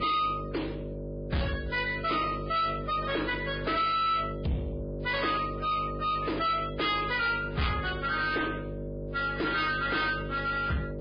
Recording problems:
lossy codec; MP3, then Vorbis, log-spectral distance 4 dB
distortion; soft clipping, signal-to-distortion ratio 7 dB
hum; 50 Hz, harmonics up to 1.3 kHz, SNR 8 dB

